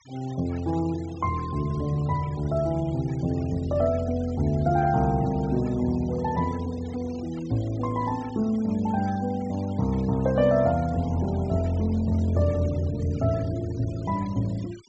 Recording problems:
treble missing; nothing above 8 kHz
noise reduction artefacts; signal-to-artefact ratio 22 dB

